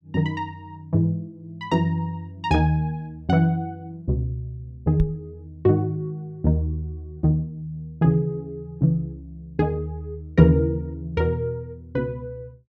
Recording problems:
knock on the microphone; at 5 s; peak +5 dB vs average level

